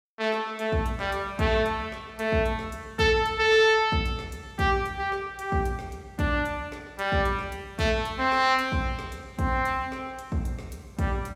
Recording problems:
none

